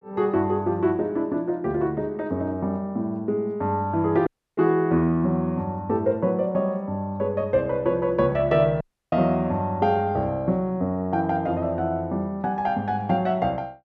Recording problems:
dropout; at 4.5 s and at 9 s

